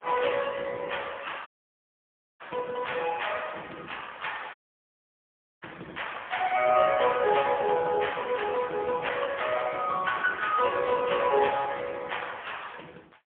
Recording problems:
phone line; 240 Hz to 3.4 kHz, AMR-NB, then MP3
audio cutting out; at 1.5 s for 1 s and at 4.5 s for 1 s

